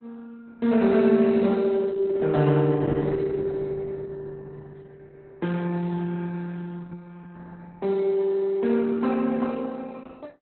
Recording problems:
lossy compression; Opus, log-spectral distance 3 dB, nothing above 4.1 kHz

